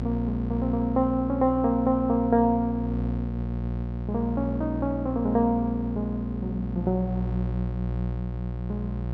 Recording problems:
hum; 60 Hz, harmonics up to 900 Hz, SNR 5 dB

